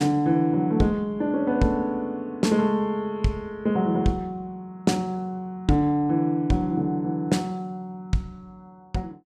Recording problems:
none

